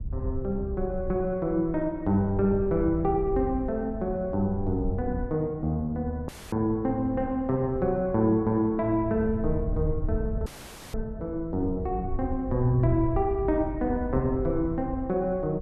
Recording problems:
wind noise; below 88 Hz, SNR 9 dB
dropout; at 6.5 s and at 10 s

